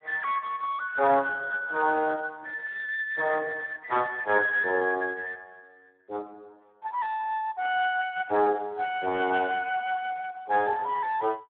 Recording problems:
telephone audio; 280 Hz to 3.7 kHz, Speex

